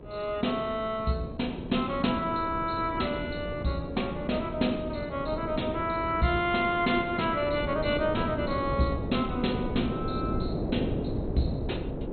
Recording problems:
lossy compression; MP2, log-spectral distance 4 dB, nothing above 4.2 kHz
electrical hum; 60 Hz, harmonics up to 1.7 kHz, SNR 21 dB
wind noise; below 420 Hz, SNR 6 dB

